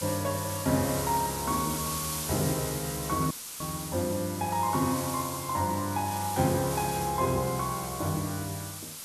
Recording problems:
background hiss; slope +1 dB per octave, SNR 6 dB
audio cutting out; at 3.5 s

